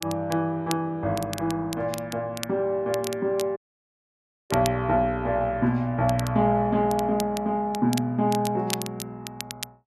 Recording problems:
crackling; vinyl, SNR 13 dB
dropout; at 3.5 s for 1 s

